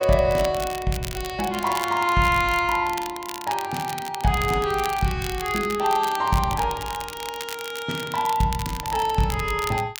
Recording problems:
crackling; vinyl, SNR 12 dB

